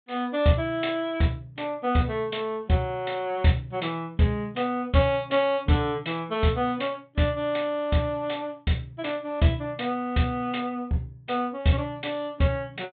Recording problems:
treble missing; nothing above 4 kHz

